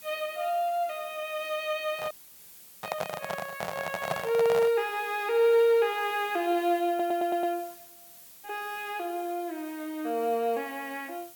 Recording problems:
hiss; slope 0 dB per octave, SNR 19 dB
handling noise; from 2 to 4.5 s; peak +3 dB vs average level
dropout; at 2 s for 0.5 s
audio stuttering; at 7 s

